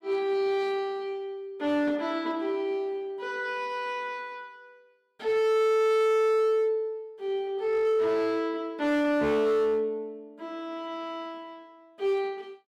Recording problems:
distortion; hard clipping, signal-to-distortion ratio 7 dB

